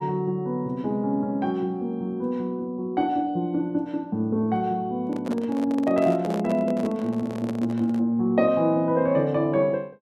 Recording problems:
handling noise; from 5 to 8 s; peak -4 dB vs average level

